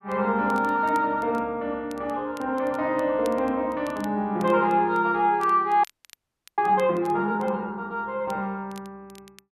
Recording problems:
crackle; vinyl, SNR 27 dB
frozen audio; at 6 s for 0.5 s

